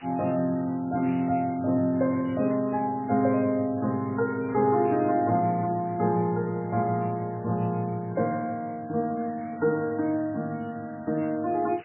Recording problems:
codec artefacts; MP3, log-spectral distance 17 dB, nothing above 2.8 kHz
background hiss; SNR 24 dB

